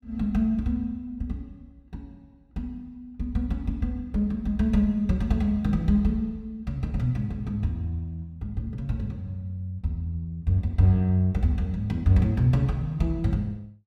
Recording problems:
none

